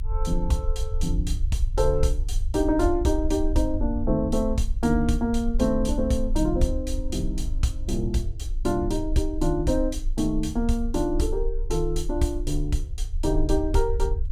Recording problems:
rumble; below 54 Hz, strongest tone 28 Hz, SNR 4 dB

